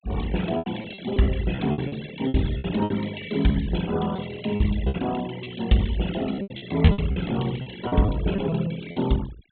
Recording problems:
low-pass filter; nothing above 4 kHz
denoising artefacts; signal-to-artefact ratio 14 dB
lost packets; 12% of the sound replaced, filled with repeated pitch periods

